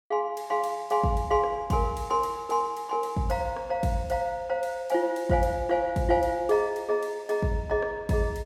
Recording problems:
none

